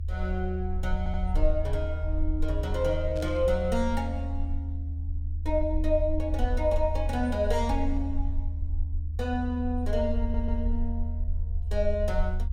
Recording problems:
rumble; below 78 Hz, SNR 1 dB
audio stuttering; at 1 s and at 10 s
static burst; at 3 s; peak -13 dB vs average level

